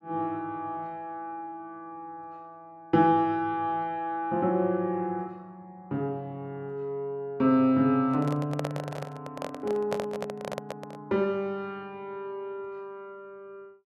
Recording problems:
handling noise; from 8 to 11 s; peak +1 dB vs average level

